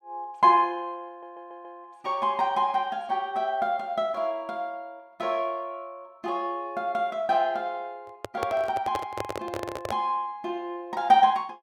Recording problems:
stutter; at 1 s
microphone handling noise; from 8 to 10 s; peak -1 dB vs average level

